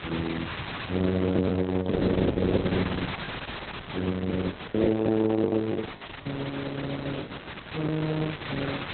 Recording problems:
codec artefacts; Opus, log-spectral distance 13 dB, nothing above 3.9 kHz
hum; 60 Hz, harmonics up to 540 Hz, SNR 27 dB
hiss; SNR 11 dB
lost packets; 9% of the sound replaced, filled with the last packet

